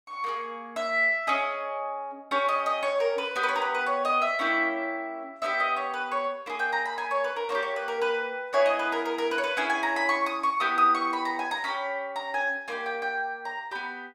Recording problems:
none

